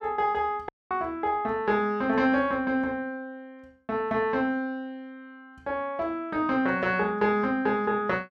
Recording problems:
dropout; at 0.5 s

